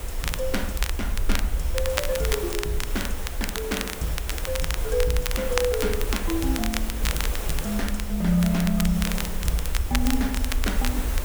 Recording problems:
background hiss; slope -4 dB per octave, SNR 7 dB
rumble; below 58 Hz, SNR 4 dB
crackle; vinyl, SNR 5 dB

